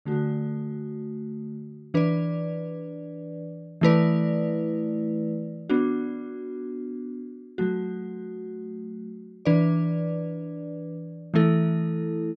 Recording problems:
none

